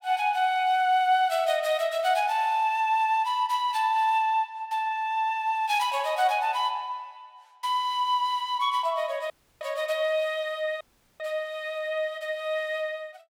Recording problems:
audio cutting out; at 9.5 s and at 11 s

